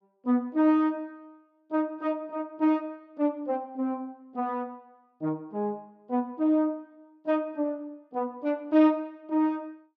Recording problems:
none

